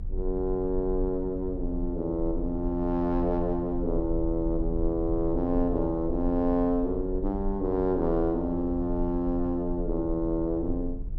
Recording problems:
low-frequency rumble; below 52 Hz, strongest tone 28 Hz, SNR 9 dB

